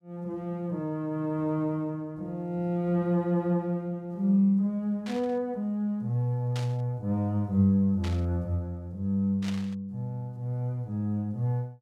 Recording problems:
static burst; 4 times, first at 5 s; peak -7 dB vs average level

